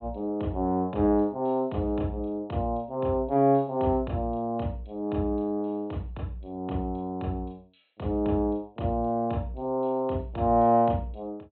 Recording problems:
treble cut off; nothing above 4 kHz

